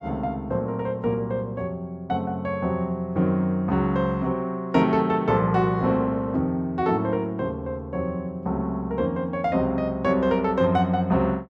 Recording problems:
none

